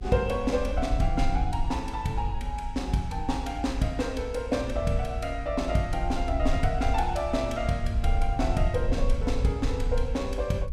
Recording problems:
rumble; below 64 Hz, SNR 3 dB

